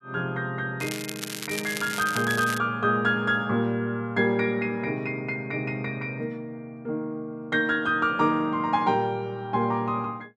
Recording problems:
crackling; from 1 to 2.5 s; loose cable, SNR 8 dB

